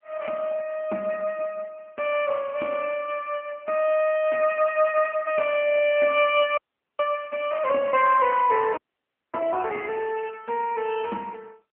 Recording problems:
phone line; 240 Hz to 3.1 kHz, AMR-NB
audio freezing; at 6.5 s and at 9 s for 0.5 s

